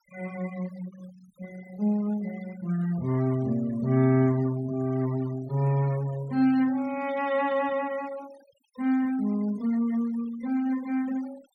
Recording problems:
noise reduction artefacts; signal-to-artefact ratio 21 dB

